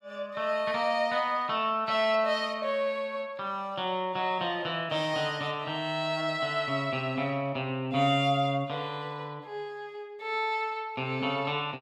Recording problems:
none

